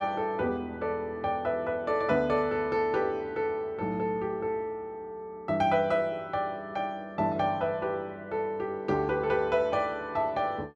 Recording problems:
none

